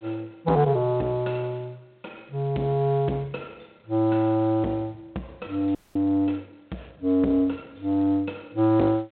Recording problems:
telephone audio; 170 Hz to 4 kHz, G.726
distorted audio; soft clipping, signal-to-distortion ratio 14 dB
frozen audio; at 6 s

